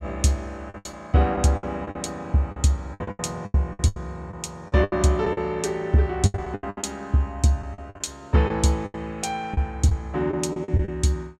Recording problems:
packet loss; 14% of the sound replaced, filled with the last packet

